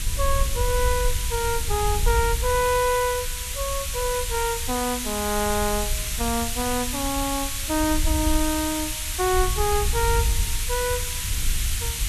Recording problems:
background hiss; SNR 2 dB
wind on the microphone; below 70 Hz, SNR 4 dB

